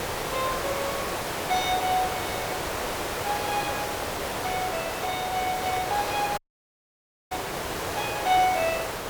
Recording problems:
hiss; SNR 1 dB
dropout; at 6.5 s for 1 s

